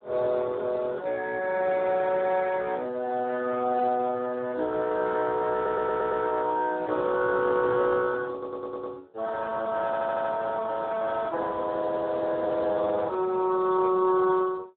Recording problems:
telephone audio; 300 Hz to 2.2 kHz, Speex
audio stuttering; at 5.5 s, at 8.5 s and at 10 s

